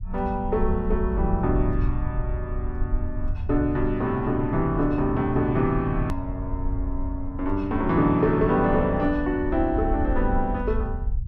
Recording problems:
rumble; below 74 Hz, SNR 6 dB
click at an edit; at 6 s

